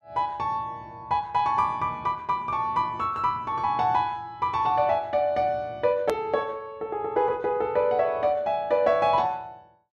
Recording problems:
click at an edit; at 6 s

